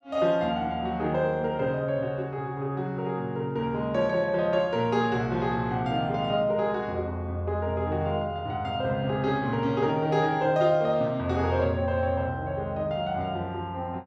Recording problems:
none

